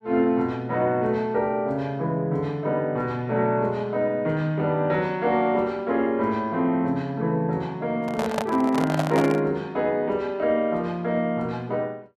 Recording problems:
handling noise; from 8 to 9.5 s; peak +3 dB vs average level

